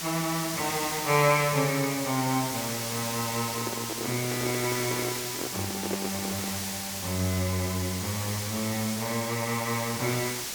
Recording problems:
hiss; SNR 3 dB
handling noise; from 3.5 to 6.5 s; peak +1 dB vs average level

